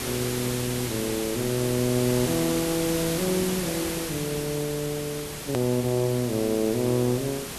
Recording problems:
hiss; slope -2 dB per octave, SNR 5 dB
hard cut with a click; at 5.5 s

